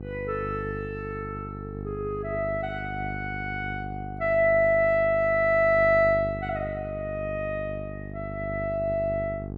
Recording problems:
hum; 50 Hz, harmonics up to 800 Hz, SNR 11 dB

